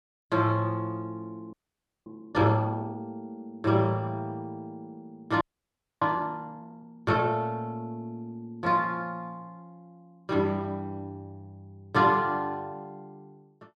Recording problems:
frozen audio; at 1.5 s for 0.5 s and at 5.5 s for 0.5 s

